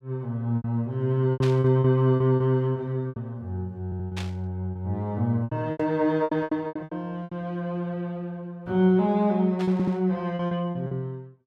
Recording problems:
packet loss; 11% of the sound replaced, filled with repeated pitch periods
static burst; 4 times, first at 1.5 s; peak -6 dB vs average level
stutter; at 4 s and at 9.5 s

